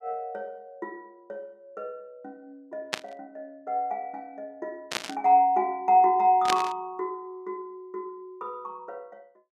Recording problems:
static burst; at 3 s, at 5 s and at 6.5 s; peak +3 dB vs average level

